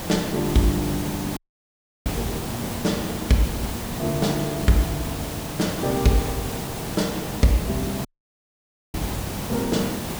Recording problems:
background hiss; slope -4 dB per octave, SNR 5 dB
audio cutting out; at 1.5 s for 0.5 s and at 8 s for 1 s

